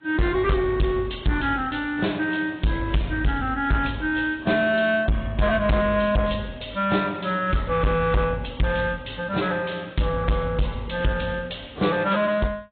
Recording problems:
low-pass filter; nothing above 3.9 kHz
codec artefacts; AAC, log-spectral distance 5 dB
distorted audio; soft clipping, signal-to-distortion ratio 6 dB

